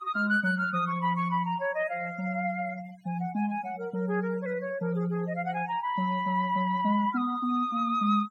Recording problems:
denoising artefacts; signal-to-artefact ratio 21 dB

